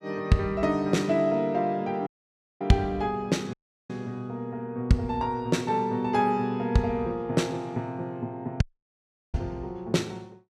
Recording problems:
audio cutting out; at 2 s for 0.5 s, at 3.5 s and at 8.5 s for 0.5 s

